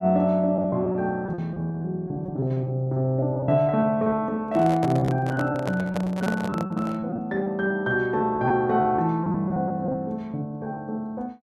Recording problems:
lost packets; 12% of the sound replaced, filled with repeated pitch periods
handling noise; from 4.5 to 7 s; peak -2 dB vs average level

